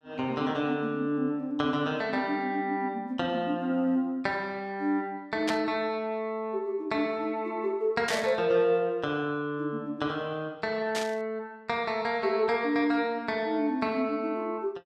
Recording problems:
burst of static; at 5.5 s, at 8 s and at 11 s; peak +1 dB vs average level

